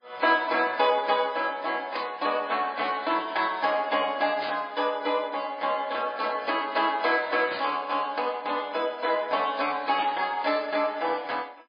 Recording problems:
lossy compression; MP3, log-spectral distance 4 dB, nothing above 4.1 kHz
burst of static; 4 times, first at 2 s; peak -5 dB vs average level

